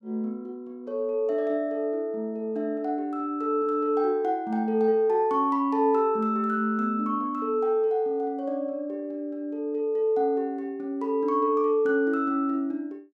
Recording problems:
none

